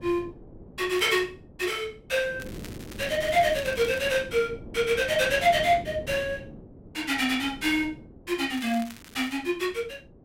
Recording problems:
wind on the microphone; below 370 Hz, SNR 17 dB
crackle; at 1 s, from 2.5 to 4 s and at 8.5 s; loose cable, SNR 20 dB

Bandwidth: 16 kHz